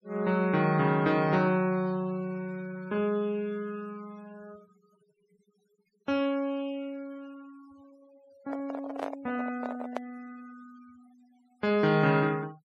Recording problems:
noise reduction artefacts; signal-to-artefact ratio 24 dB
handling noise; from 8.5 to 10 s; peak -1 dB vs average level

